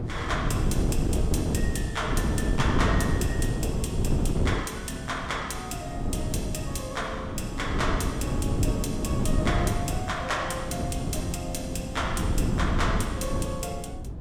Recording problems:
wind noise; below 230 Hz, SNR -2 dB

